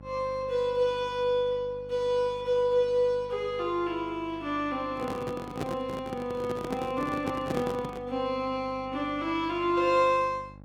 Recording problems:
hum; 50 Hz, harmonics up to 1.1 kHz, SNR 20 dB
microphone handling noise; from 5 to 8 s; peak 0 dB vs average level

